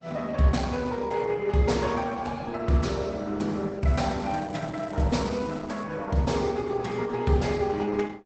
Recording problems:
lossy codec; Opus, log-spectral distance 4 dB, nothing above 8 kHz
crackle; from 4 to 6 s; loose cable, SNR 26 dB

